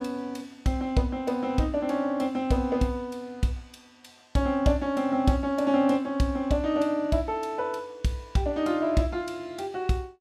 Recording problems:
none

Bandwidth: 15 kHz